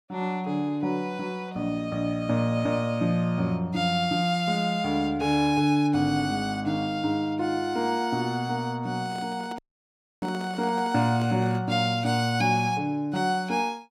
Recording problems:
handling noise; from 9 to 12 s; peak -11 dB vs average level
audio cutting out; at 9.5 s for 0.5 s

